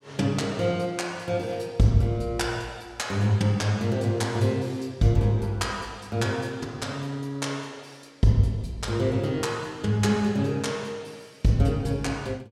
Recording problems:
none

